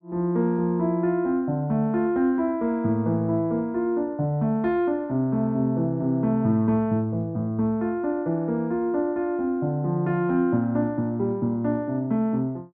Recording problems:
none

